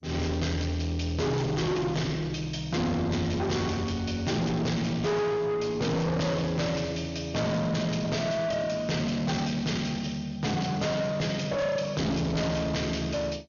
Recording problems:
lossy codec; MP2, log-spectral distance 4 dB, nothing above 6.7 kHz
distorted audio; soft clipping, signal-to-distortion ratio 7 dB

